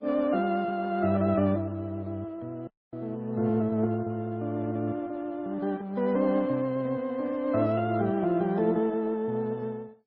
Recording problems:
codec artefacts; MP2, then MP3, log-spectral distance 2 dB
dropout; at 2.5 s

